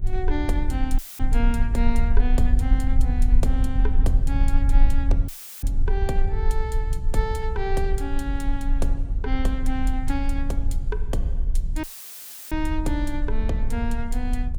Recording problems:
low-frequency rumble; below 48 Hz, strongest tone 26 Hz, SNR -5 dB
dropout; at 1 s, at 5.5 s and at 12 s for 0.5 s; filled with static

